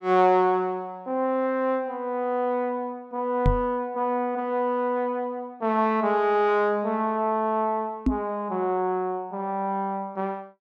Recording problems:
knock on the microphone; at 3.5 s and at 8 s; peak +6 dB vs average level

